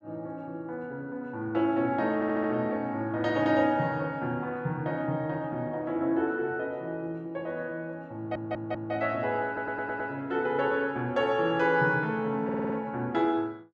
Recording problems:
audio stuttering; 4 times, first at 2 s

